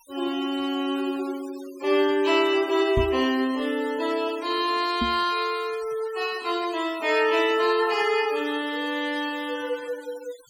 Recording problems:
denoising artefacts; signal-to-artefact ratio 18 dB
microphone bump; at 3 s and at 5 s; peak +2 dB vs average level

